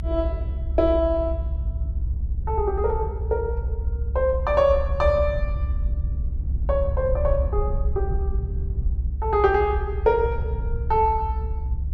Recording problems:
low-frequency rumble; below 68 Hz, SNR 3 dB

